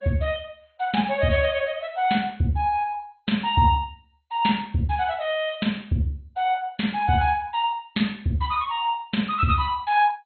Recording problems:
lossy codec; MP2, log-spectral distance 3 dB, nothing above 4.2 kHz

